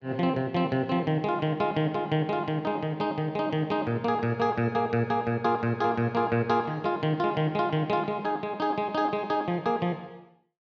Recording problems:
none

